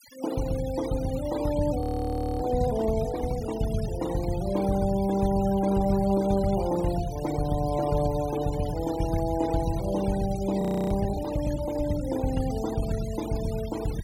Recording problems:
noise reduction artefacts; signal-to-artefact ratio 16 dB
frozen audio; at 2 s for 0.5 s and at 11 s

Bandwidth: 16.5 kHz